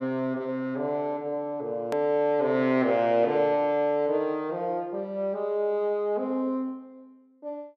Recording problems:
edit click; at 2 s

